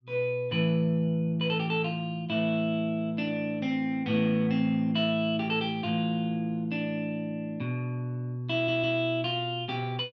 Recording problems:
audio stuttering; at 8.5 s

